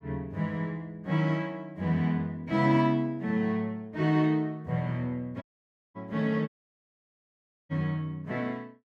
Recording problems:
audio cutting out; at 5.5 s for 0.5 s and at 6.5 s for 1 s

